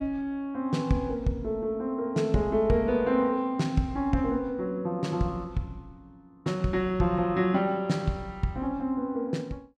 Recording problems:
none

